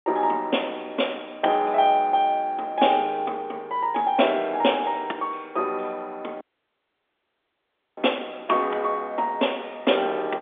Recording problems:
phone line; 260 Hz to 3.6 kHz, G.711
dropout; at 6.5 s for 1.5 s

